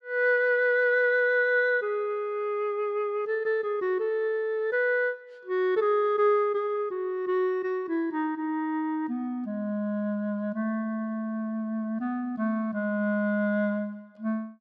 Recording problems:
none

